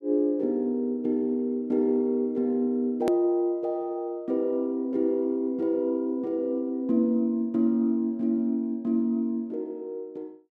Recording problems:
click at an edit; at 3 s

